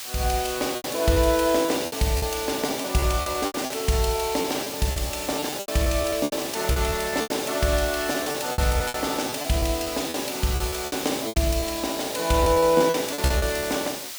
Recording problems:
hiss; slope +3 dB per octave, SNR 8 dB
lost packets; 13% of the sound replaced, filled with repeated pitch periods

